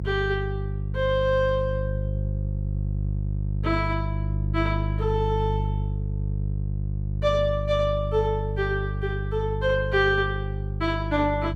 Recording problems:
hum; 50 Hz, harmonics up to 350 Hz, SNR 2 dB

